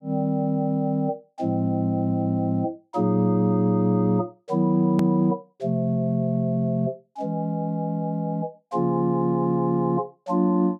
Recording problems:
hard cut with a click; at 5 s

